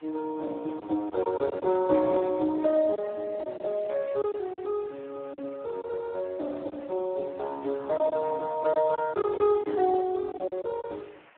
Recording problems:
telephone audio; 260 Hz to 2.1 kHz, Speex
background hiss; SNR 27 dB
lost packets; 6% of the sound replaced, filled with silence

